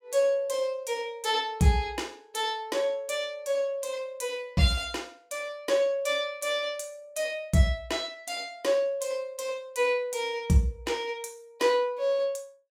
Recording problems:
none

